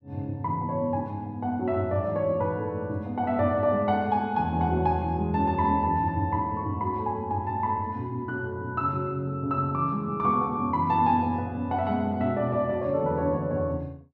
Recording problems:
none

